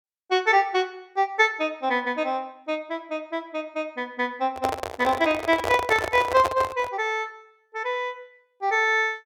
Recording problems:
microphone handling noise; from 4.5 to 7 s; peak +2 dB vs average level

